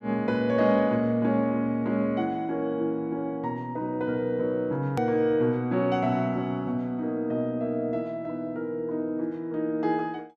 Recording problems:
hard cut with a click; at 5 s

